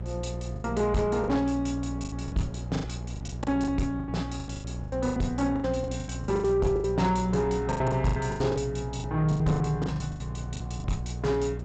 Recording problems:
codec artefacts; G.722, log-spectral distance 2 dB, nothing above 7.3 kHz
distortion; soft clipping, signal-to-distortion ratio 12 dB
hum; 60 Hz, harmonics up to 600 Hz, SNR 7 dB
wind on the microphone; below 570 Hz, SNR 20 dB
packet loss; 18% of the sound replaced, filled with the last packet

